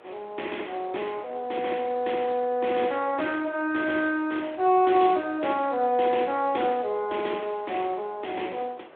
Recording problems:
phone line; 280 Hz to 3.4 kHz, Speex
wind on the microphone; below 1.3 kHz, SNR 24 dB

